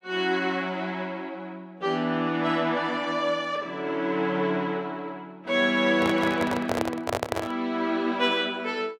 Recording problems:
handling noise; from 6 to 7.5 s; peak +2 dB vs average level

